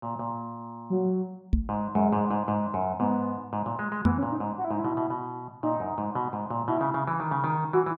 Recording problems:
microphone thump; at 1.5 s and at 4 s; peak +8 dB vs average level

